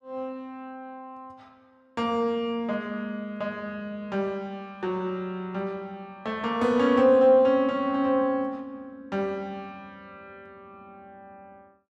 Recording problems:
none

